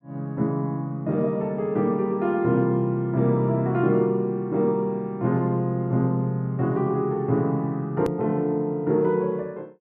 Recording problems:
click at an edit; at 8 s

